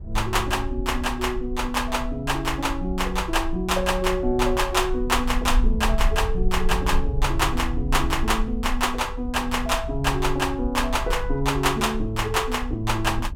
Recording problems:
rumble; below 54 Hz, strongest tone 22 Hz, SNR 7 dB

